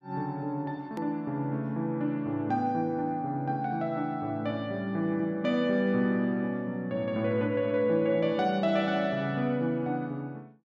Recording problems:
edit click; at 1 s

